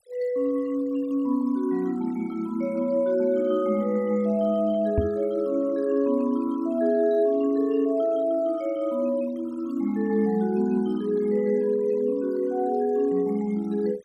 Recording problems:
noise reduction artefacts; signal-to-artefact ratio 24 dB
knock on the microphone; at 5 s; peak +3 dB vs average level

